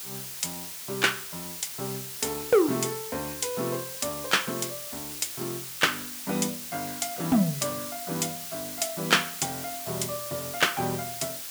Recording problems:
hiss; slope +2 dB per octave, SNR 6 dB

